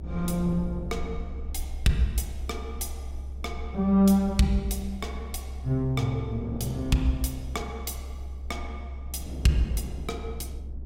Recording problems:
low-frequency rumble; below 68 Hz, strongest tone 66 Hz, SNR 9 dB
wind noise; below 350 Hz, SNR 16 dB

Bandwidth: 16 kHz